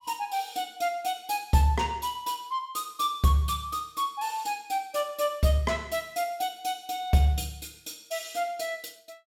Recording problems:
none

